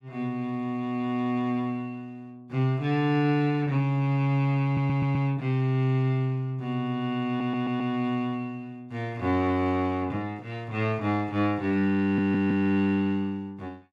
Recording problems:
stutter; at 4.5 s, at 7.5 s and at 12 s

